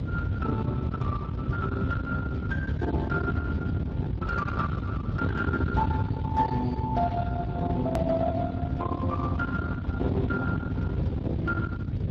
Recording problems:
lossy compression; Speex, log-spectral distance 2 dB, nothing above 13.1 kHz
distorted audio; soft clipping, signal-to-distortion ratio 11 dB
hum; 50 Hz, harmonics up to 350 Hz, SNR 13 dB
rumble; below 220 Hz, SNR 1 dB
click at an edit; at 8 s

